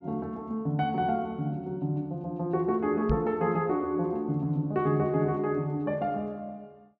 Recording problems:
low-pass filter; nothing above 8 kHz
microphone bump; at 3 s; peak +3 dB vs average level

